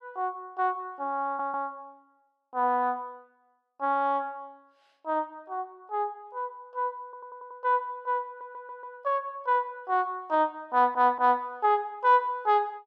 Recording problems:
audio stuttering; 4 times, first at 1.5 s

